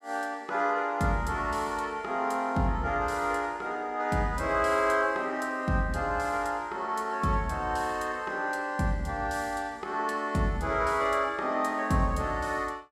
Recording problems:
none

